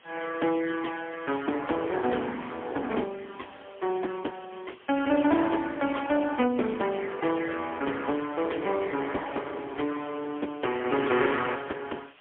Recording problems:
telephone audio; 220 Hz to 3.3 kHz, AMR-NB, then MP3
hiss; SNR 25 dB

